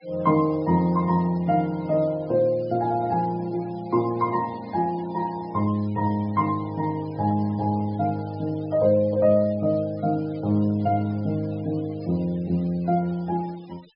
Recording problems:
low-pass filter; nothing above 5.5 kHz
noise reduction artefacts; signal-to-artefact ratio 26 dB

